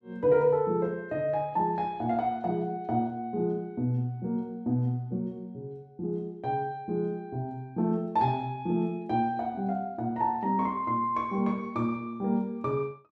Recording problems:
none

